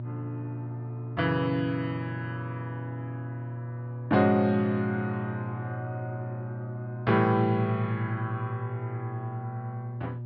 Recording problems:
treble missing; nothing above 5.5 kHz
hum; 60 Hz, harmonics up to 600 Hz, SNR 7 dB

